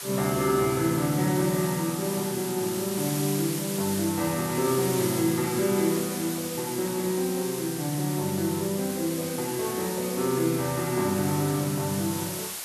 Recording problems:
hiss; slope +1 dB per octave, SNR 7 dB

